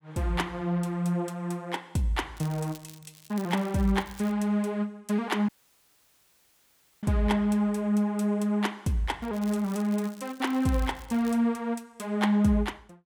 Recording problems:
crackling; from 2.5 to 4.5 s and from 9 to 11 s; loose cable, SNR 22 dB
audio cutting out; at 5.5 s for 1.5 s

